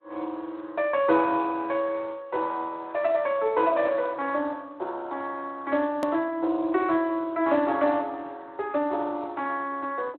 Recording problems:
phone line; 260 Hz to 3.4 kHz, Speex
edit click; at 6 s

